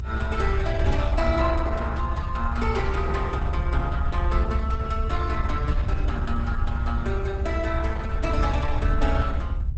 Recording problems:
lossy codec; Opus, log-spectral distance 3 dB, nothing above 8 kHz
rumble; below 76 Hz, SNR -1 dB
wind on the microphone; below 84 Hz, SNR 3 dB

